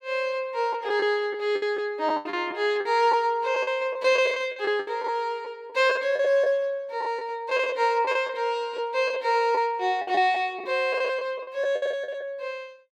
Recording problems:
packet loss; 10% of the sound replaced, filled with the last packet

